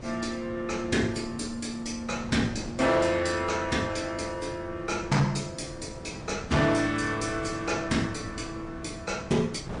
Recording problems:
codec artefacts; MP3, log-spectral distance 3 dB, nothing above 9.2 kHz
distortion; hard clipping, uneven, signal-to-distortion ratio 10 dB
wind noise; below 430 Hz, SNR 13 dB

